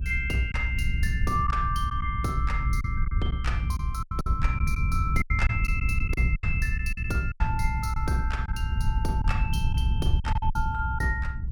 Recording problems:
rumble; below 92 Hz, SNR -2 dB
lost packets; 8% of the sound replaced, filled with silence

